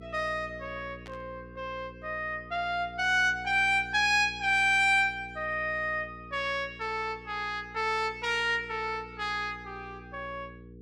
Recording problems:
hum; 60 Hz, harmonics up to 480 Hz, SNR 20 dB
burst of static; at 1 s; peak -15 dB vs average level

